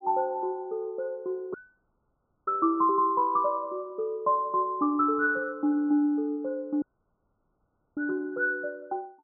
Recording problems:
dropout; at 1.5 s for 1 s and at 7 s for 1 s

